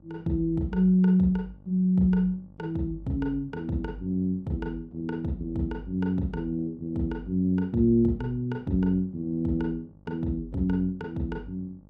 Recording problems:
hum; 50 Hz, harmonics up to 900 Hz, SNR 26 dB

